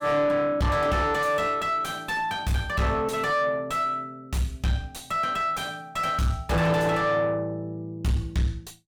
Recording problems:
distorted audio; soft clipping, signal-to-distortion ratio 5 dB

